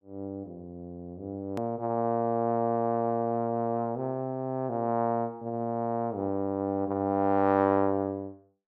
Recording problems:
hard cut with a click; at 1.5 s

